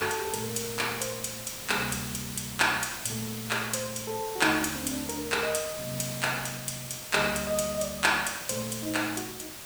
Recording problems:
background hiss; slope -1 dB per octave, SNR 8 dB

